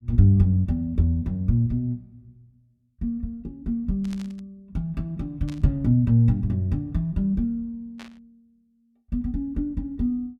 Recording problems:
static burst; at 4 s, at 5.5 s and at 8 s; peak -15 dB vs average level

